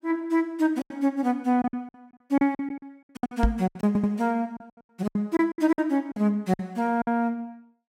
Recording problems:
lost packets; 14% of the sound replaced, filled with silence
knock on the microphone; at 3.5 s; peak +8 dB vs average level
audio stuttering; at 4 s

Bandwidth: 16 kHz